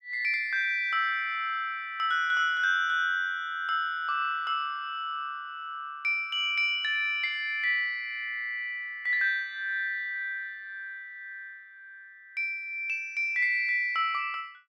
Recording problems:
none

